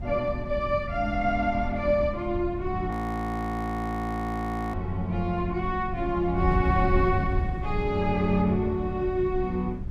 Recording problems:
wind on the microphone; below 110 Hz, SNR 7 dB
frozen audio; at 3 s for 2 s

